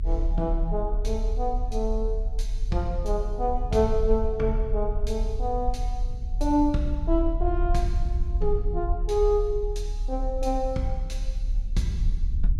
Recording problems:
low-frequency rumble; below 46 Hz, strongest tone 36 Hz, SNR 2 dB

